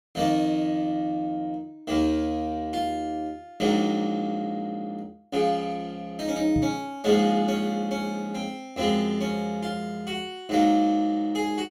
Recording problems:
microphone thump; at 6.5 s; peak 0 dB vs average level

